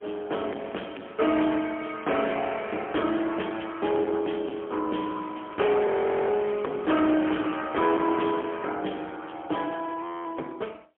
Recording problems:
telephone audio; 240 Hz to 3.3 kHz, AMR-NB, then MP3
distortion; hard clipping, uneven, signal-to-distortion ratio 10 dB
crackle; from 1 to 3 s, from 5 to 7 s and at 10 s; loose cable, SNR 25 dB
audio freezing; at 6 s and at 10 s

